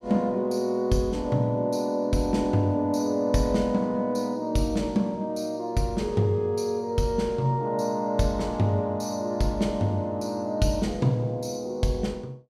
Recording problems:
none

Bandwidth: 16 kHz